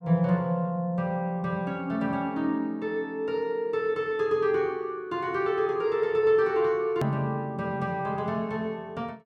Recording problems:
click at an edit; at 7 s

